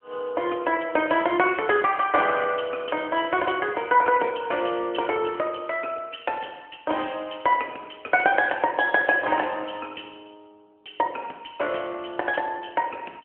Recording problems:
phone line; 260 Hz to 3.1 kHz, AMR-NB

